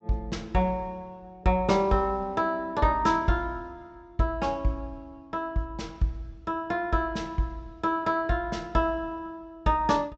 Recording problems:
treble missing; nothing above 8 kHz

